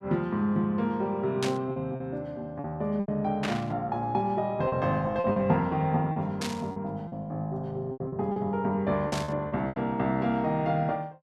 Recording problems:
lost packets; 7% of the sound replaced, filled with repeated pitch periods
burst of static; 4 times, first at 1.5 s; peak +1 dB vs average level

